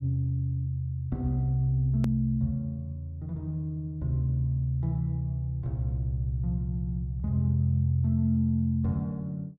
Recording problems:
hard cut with a click; at 2 s

